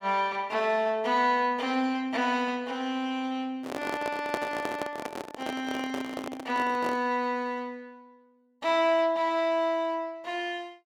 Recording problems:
microphone handling noise; from 3.5 to 7 s; peak +1 dB vs average level

